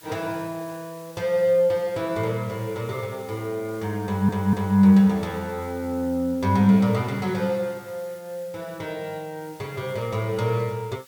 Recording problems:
hiss; SNR 24 dB
stutter; at 4 s

